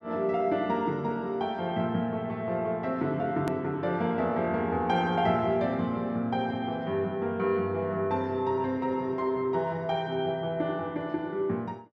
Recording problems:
click at an edit; at 3.5 s

